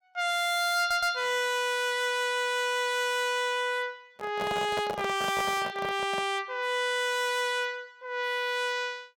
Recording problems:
distortion; hard clipping, uneven, signal-to-distortion ratio 11 dB
stutter; at 1 s
microphone handling noise; from 4 to 6.5 s; peak -2 dB vs average level

